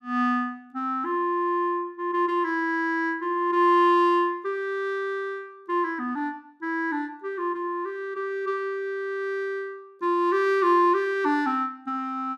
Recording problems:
none

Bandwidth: 14 kHz